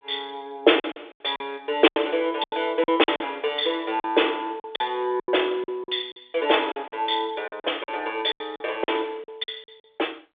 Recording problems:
telephone audio; 280 Hz to 3.6 kHz, G.726
lost packets; 12% of the sound replaced, filled with silence

